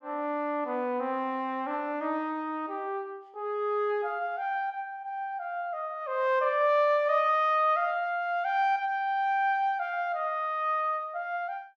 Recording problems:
none

